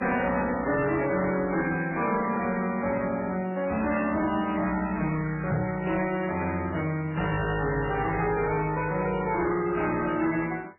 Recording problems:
lossy compression; MP3, then MP3, log-spectral distance 5 dB, nothing above 2.4 kHz
distorted audio; hard clipping, uneven, signal-to-distortion ratio 10 dB
microphone thump; at 5.5 s; peak +4 dB vs average level

